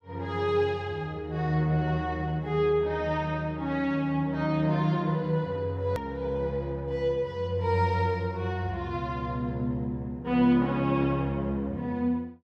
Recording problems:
hard cut with a click; at 6 s

